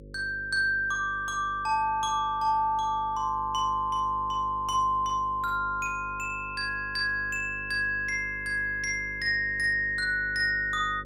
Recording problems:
hum; 50 Hz, harmonics up to 550 Hz, SNR 19 dB

